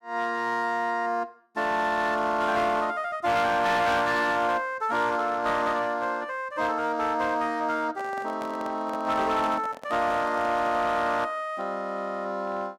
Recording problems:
distorted audio; hard clipping, uneven, signal-to-distortion ratio 11 dB
handling noise; from 8 to 11 s; peak -9 dB vs average level

